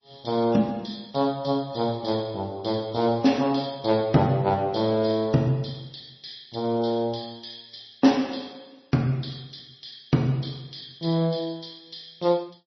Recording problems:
codec artefacts; MP3, log-spectral distance 7 dB, nothing above 5.2 kHz

